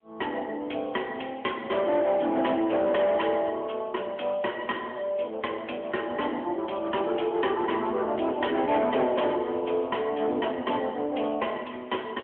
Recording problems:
phone line; 220 Hz to 3.3 kHz, AMR-NB
distortion; hard clipping, uneven, signal-to-distortion ratio 11 dB

